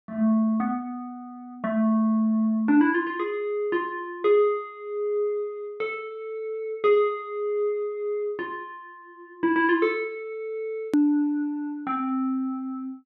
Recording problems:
edit click; at 11 s

